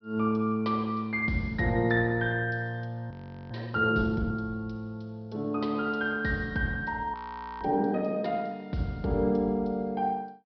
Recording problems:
low-pass filter; nothing above 5.5 kHz
frozen audio; at 3 s and at 7 s

